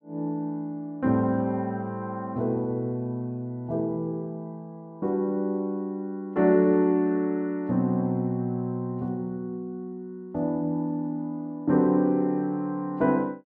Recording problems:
none

